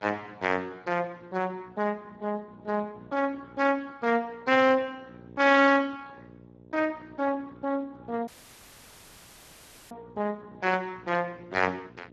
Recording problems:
lossy compression; Speex, log-spectral distance 3 dB
electrical hum; 60 Hz, harmonics up to 900 Hz, SNR 22 dB
audio cutting out; at 8.5 s for 1.5 s

